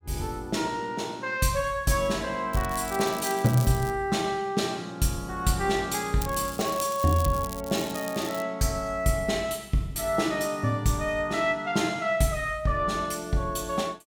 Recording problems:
crackle; from 2.5 to 4 s and from 6 to 8.5 s; loose cable, SNR 12 dB

